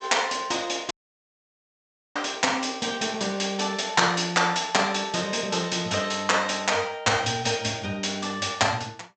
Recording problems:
treble cut off; nothing above 8 kHz
audio cutting out; at 1 s for 1 s

